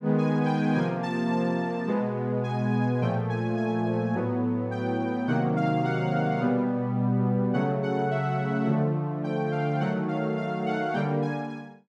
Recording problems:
none

